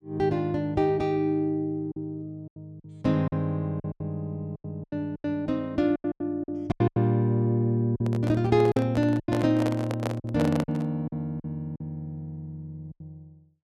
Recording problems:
lost packets; 10% of the sound replaced, filled with silence
handling noise; from 8 to 11 s; peak 0 dB vs average level

